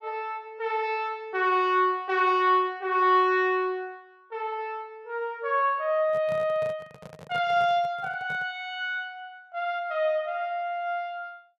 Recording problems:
handling noise; from 6 to 8.5 s; peak -11 dB vs average level

